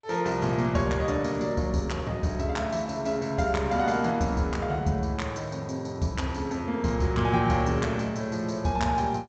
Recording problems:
lossy codec; G.722, log-spectral distance 2 dB

